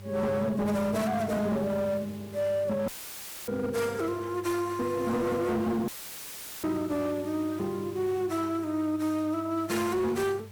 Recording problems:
distortion; hard clipping, signal-to-distortion ratio 11 dB
mains hum; 50 Hz, harmonics up to 1 kHz, SNR 18 dB
hiss; SNR 23 dB
audio cutting out; at 3 s for 0.5 s and at 6 s for 1 s; filled with static

